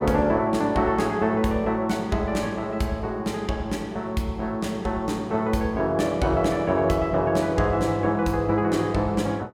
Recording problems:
none

